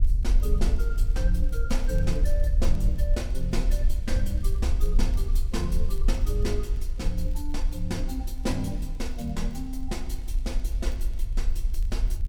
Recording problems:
rumble; below 50 Hz, SNR -5 dB
crackling; vinyl, SNR 27 dB

